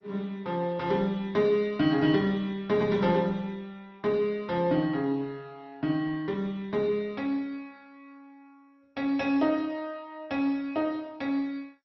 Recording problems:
lossy codec; MP2, then Opus, log-spectral distance 2 dB, nothing above 5.7 kHz

